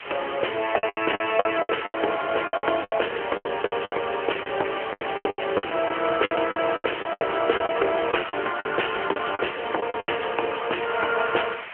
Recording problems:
phone line; 320 Hz to 3.1 kHz, AMR-NB
background hiss; SNR 11 dB
lost packets; 16% of the sound replaced, filled with the last packet

